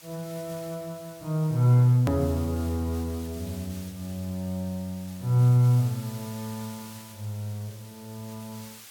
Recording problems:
background hiss; slope +2 dB per octave, SNR 20 dB
edit click; at 2 s

